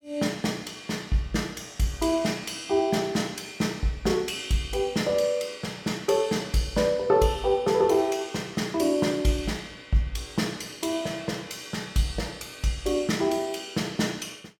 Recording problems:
none

